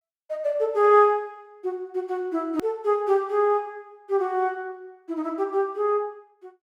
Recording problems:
edit click; at 2.5 s

